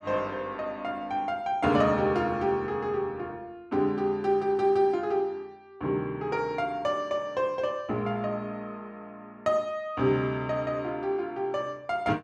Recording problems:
none

